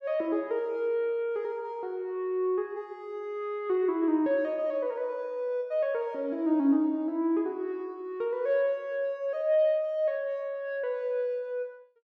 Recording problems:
none

